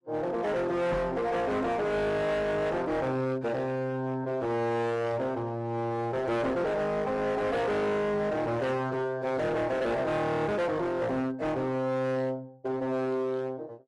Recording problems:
codec artefacts; AAC, log-spectral distance 2 dB, nothing above 11.6 kHz
distorted audio; hard clipping, signal-to-distortion ratio 8 dB
microphone thump; at 1 s; peak +1 dB vs average level

